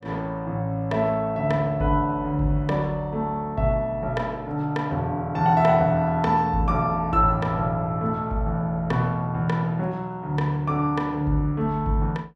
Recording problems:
none

